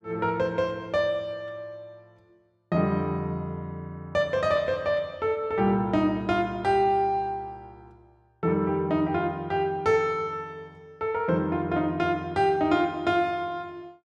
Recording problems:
none

